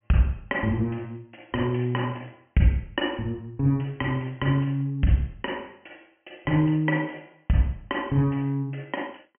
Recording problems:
treble missing; nothing above 3.1 kHz

